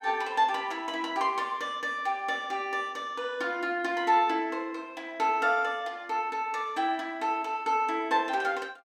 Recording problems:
none

